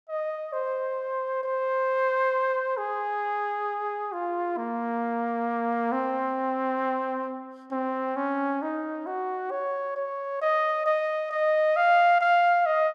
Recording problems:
none

